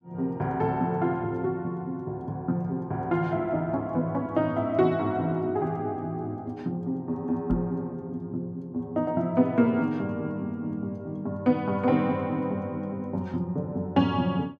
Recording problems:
microphone thump; at 7.5 s; peak -2 dB vs average level

